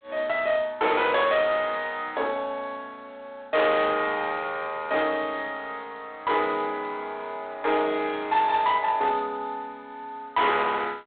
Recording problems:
telephone audio; 280 Hz to 4 kHz, G.726
distortion; hard clipping, uneven, signal-to-distortion ratio 11 dB

